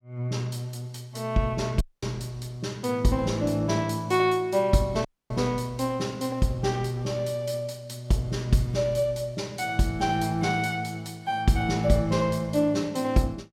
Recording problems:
audio cutting out; at 2 s and at 5 s

